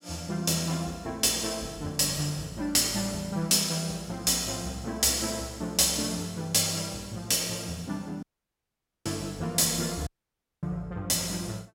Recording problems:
audio cutting out; at 8 s for 1 s and at 10 s for 0.5 s

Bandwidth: 16.5 kHz